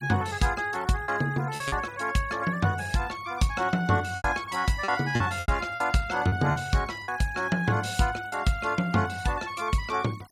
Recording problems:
noise reduction artefacts; signal-to-artefact ratio 21 dB
lost packets; 5% of the sound replaced, filled with repeated pitch periods

